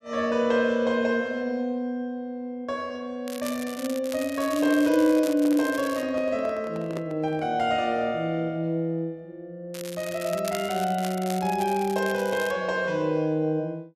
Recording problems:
crackle; from 3.5 to 6 s and from 9.5 to 13 s; loose cable, SNR 14 dB
microphone handling noise; from 4.5 to 7.5 s; peak -4 dB vs average level

